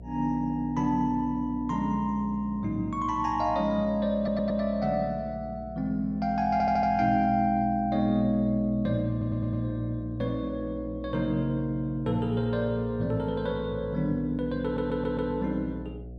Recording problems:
hum; 60 Hz, harmonics up to 720 Hz, SNR 15 dB
audio stuttering; 4 times, first at 4 s

